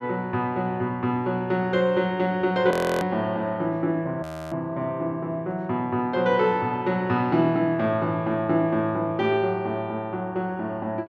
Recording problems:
audio freezing; at 2.5 s and at 4 s

